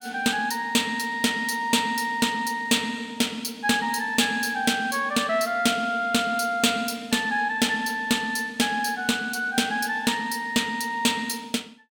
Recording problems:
distorted audio; soft clipping, signal-to-distortion ratio 11 dB

